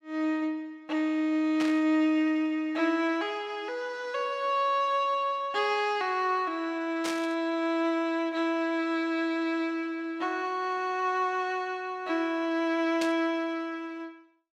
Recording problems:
burst of static; at 1.5 s, at 7 s and at 13 s; peak -2 dB vs average level

